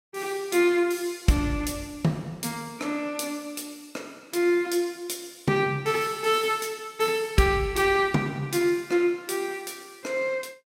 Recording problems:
none

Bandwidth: 16 kHz